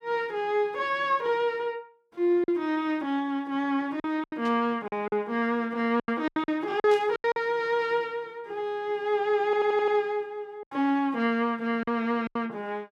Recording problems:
lost packets; 7% of the sound replaced, filled with silence
static burst; at 4.5 s and at 7 s; peak -11 dB vs average level
stutter; at 9.5 s

